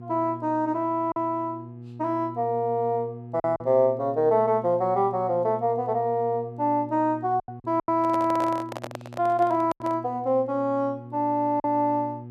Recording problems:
electrical hum; 60 Hz, harmonics up to 480 Hz, SNR 16 dB
lost packets; 4% of the sound replaced, filled with silence
handling noise; from 8 to 10 s; peak -5 dB vs average level

